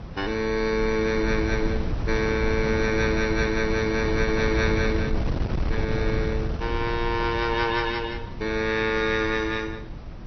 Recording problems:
lossy compression; MP2, then MP3, log-spectral distance 3 dB, nothing above 5.8 kHz
wind on the microphone; below 170 Hz, SNR 5 dB

